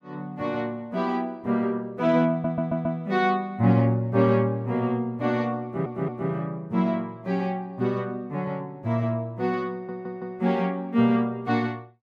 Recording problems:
audio stuttering; at 2.5 s, at 5.5 s and at 9.5 s

